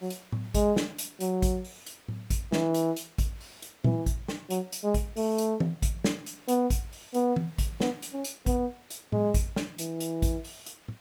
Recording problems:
background hiss; slope -3 dB per octave, SNR 26 dB

